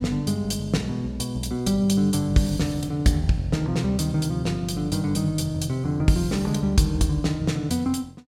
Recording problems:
none

